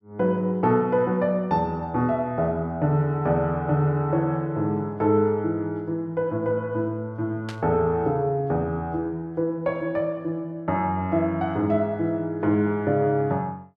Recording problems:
static burst; at 7.5 s; peak -9 dB vs average level

